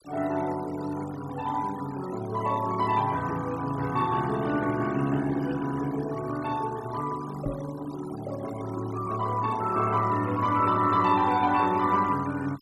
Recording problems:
noise reduction artefacts; signal-to-artefact ratio 17 dB
knock on the microphone; at 7.5 s; peak 0 dB vs average level

